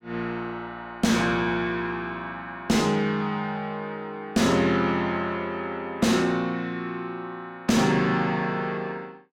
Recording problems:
distortion; soft clipping, signal-to-distortion ratio 6 dB

